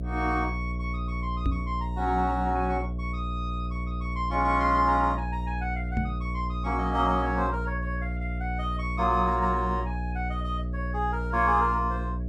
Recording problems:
hum; 60 Hz, harmonics up to 660 Hz, SNR 4 dB
microphone thump; at 1.5 s and at 6 s; peak +3 dB vs average level

